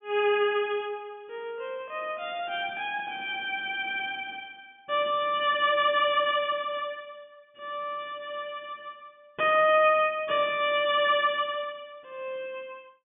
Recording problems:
low-pass filter; nothing above 3.5 kHz

